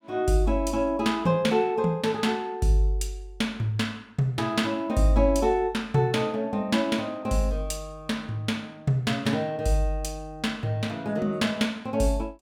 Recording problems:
none

